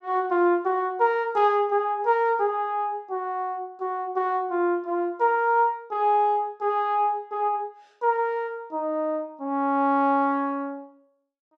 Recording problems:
none

